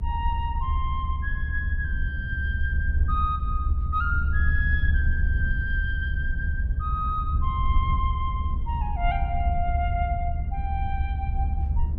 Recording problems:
rumble; below 74 Hz, SNR -3 dB

